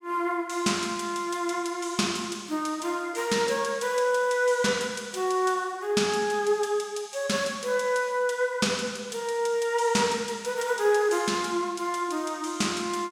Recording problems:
none

